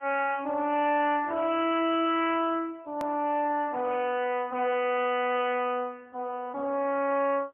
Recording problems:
phone line; 260 Hz to 3.2 kHz, AMR-NB, then MP3
distorted audio; soft clipping, signal-to-distortion ratio 8 dB
click at an edit; at 3 s

